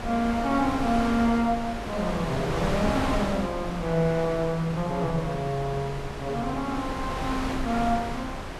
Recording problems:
wind noise; below 1.2 kHz, SNR 5 dB

